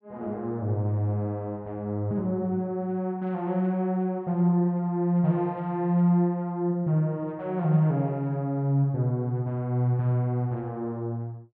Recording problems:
none

